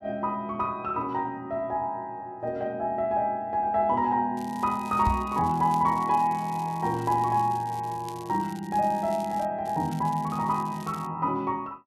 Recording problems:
crackling; from 4.5 to 9.5 s and from 9.5 to 11 s; loose cable, SNR 22 dB
microphone thump; at 5 s; peak +3 dB vs average level

